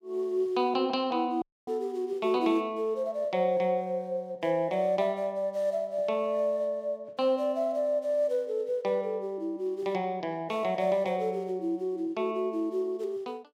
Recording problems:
audio cutting out; at 1.5 s

